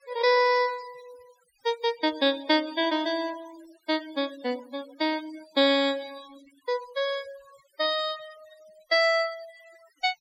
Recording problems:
denoising artefacts; signal-to-artefact ratio 21 dB

